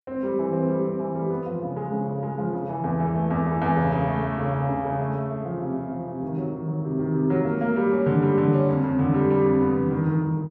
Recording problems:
none

